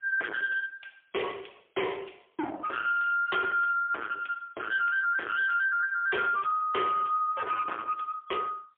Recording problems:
phone line; 320 Hz to 3.4 kHz, AMR-NB, then MP3
distortion; soft clipping, signal-to-distortion ratio 4 dB

